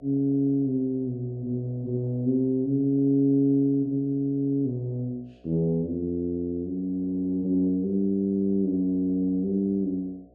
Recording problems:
electrical hum; 60 Hz, harmonics up to 720 Hz, SNR 31 dB

